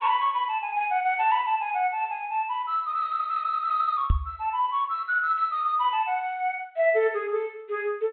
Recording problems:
low-pass filter; nothing above 4 kHz
knock on the microphone; at 4 s; peak +6 dB vs average level

